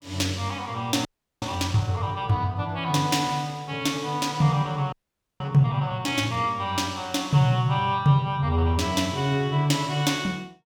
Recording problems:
audio freezing; at 1 s and at 5 s

